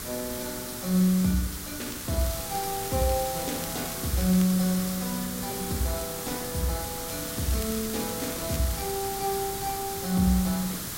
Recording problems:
background hiss; SNR 4 dB
crackling; from 2 to 4.5 s and from 7 to 9 s; loose cable, SNR 13 dB

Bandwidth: 16 kHz